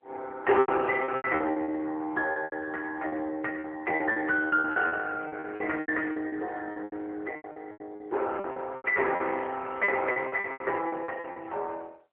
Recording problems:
phone line; 340 Hz to 3.5 kHz, AMR-NB
lost packets; 17% of the sound replaced, filled with repeated pitch periods

